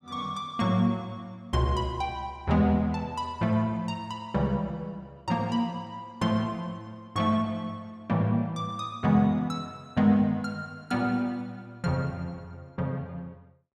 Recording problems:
none

